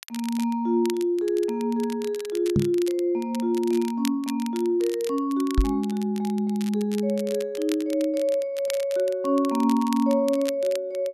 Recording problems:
crackling; vinyl, SNR 17 dB
microphone thump; at 2.5 s and at 5.5 s; peak +6 dB vs average level

